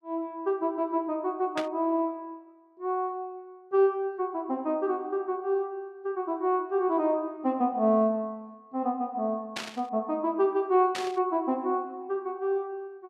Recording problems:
static burst; at 1.5 s, at 9.5 s and at 11 s; peak -1 dB vs average level

